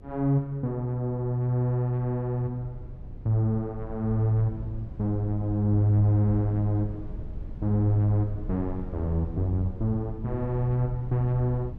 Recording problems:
hum; 50 Hz, harmonics up to 500 Hz, SNR 28 dB
rumble; below 100 Hz, SNR 14 dB

